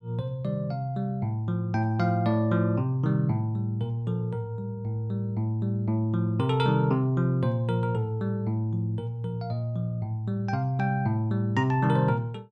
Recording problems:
none

